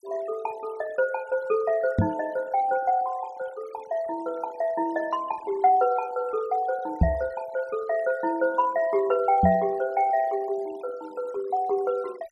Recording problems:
noise reduction artefacts; signal-to-artefact ratio 21 dB
microphone thump; at 2 s, at 7 s and at 9.5 s; peak +9 dB vs average level

